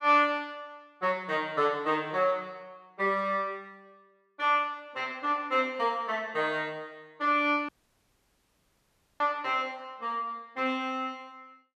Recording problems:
dropout; at 7.5 s for 1.5 s

